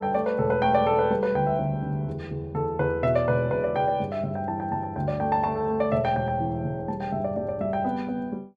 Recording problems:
none

